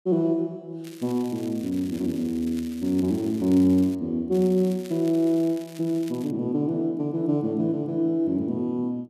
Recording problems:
crackling; from 1 to 4 s and from 4.5 to 6.5 s; loose cable, SNR 23 dB

